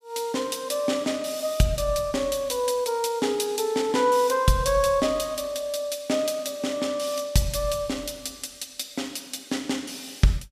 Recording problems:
none

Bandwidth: 14.5 kHz